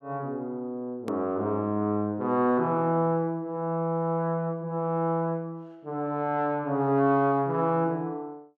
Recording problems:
click at an edit; at 1 s

